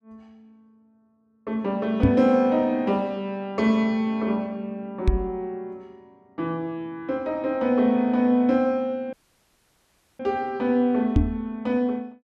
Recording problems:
microphone bump; at 2 s, at 5 s and at 11 s; peak +8 dB vs average level
dropout; at 9 s for 1 s

